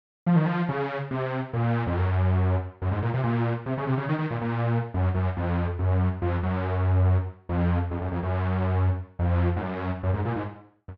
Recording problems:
none

